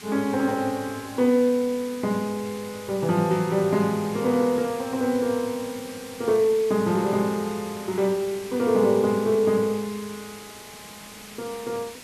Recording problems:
background hiss; slope -1 dB per octave, SNR 17 dB

